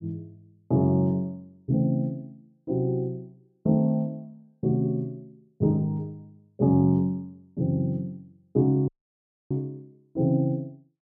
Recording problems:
audio cutting out; at 9 s for 0.5 s

